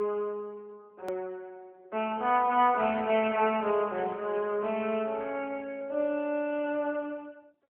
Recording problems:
phone line; 240 Hz to 3.1 kHz, AMR-NB
hard cut with a click; at 1 s

